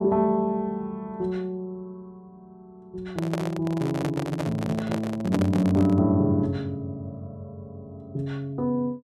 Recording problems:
handling noise; from 3 to 6 s; peak 0 dB vs average level

